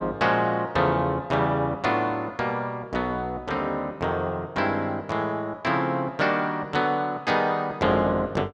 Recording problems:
none

